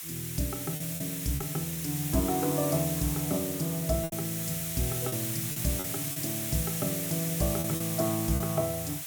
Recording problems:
hiss; slope +2 dB per octave, SNR 1 dB
packet loss; 5% of the sound replaced, filled with repeated pitch periods

